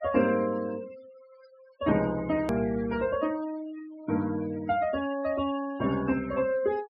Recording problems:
treble missing; nothing above 5.5 kHz
noise reduction artefacts; signal-to-artefact ratio 17 dB
edit click; at 2.5 s

